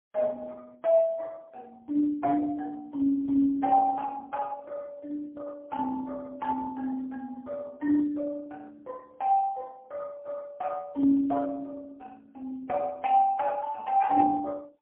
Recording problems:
telephone audio; 240 Hz to 2.5 kHz, AMR-NB, then MP3

